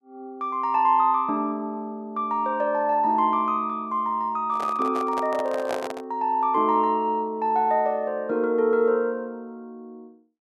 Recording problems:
handling noise; from 4.5 to 6 s; peak -2 dB vs average level

